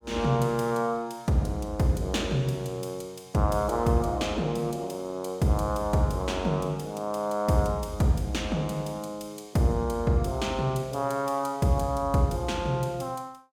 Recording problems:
none

